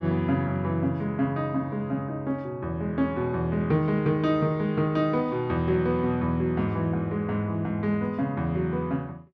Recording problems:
none

